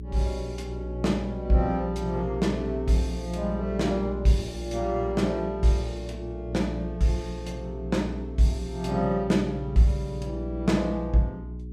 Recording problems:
hum; 60 Hz, harmonics up to 420 Hz, SNR 8 dB

